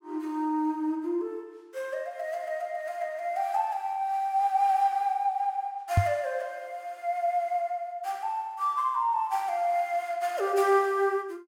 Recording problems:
microphone bump; at 6 s; peak +9 dB vs average level

